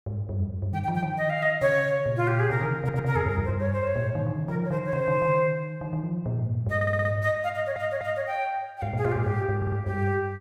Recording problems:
audio stuttering; 4 times, first at 3 s

